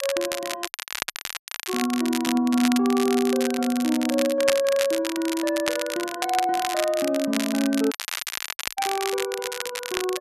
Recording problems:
crackling; vinyl, SNR 6 dB
dropout; at 0.5 s for 1 s and at 8 s for 1 s

